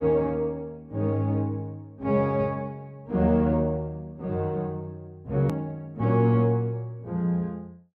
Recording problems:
hard cut with a click; at 5.5 s

